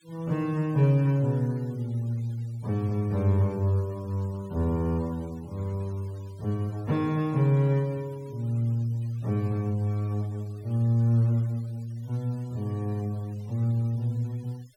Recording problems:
noise reduction artefacts; signal-to-artefact ratio 28 dB

